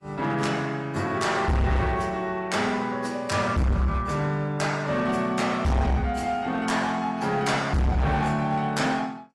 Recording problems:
lossy codec; AAC, log-spectral distance 2 dB, nothing above 11.3 kHz
distorted audio; hard clipping, signal-to-distortion ratio 7 dB

